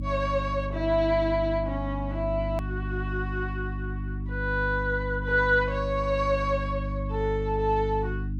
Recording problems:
electrical hum; 50 Hz, harmonics up to 300 Hz, SNR 5 dB
hard cut with a click; at 2.5 s

